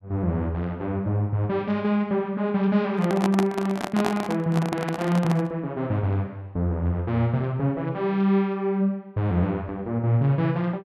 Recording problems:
microphone handling noise; from 3 to 5.5 s; peak +2 dB vs average level

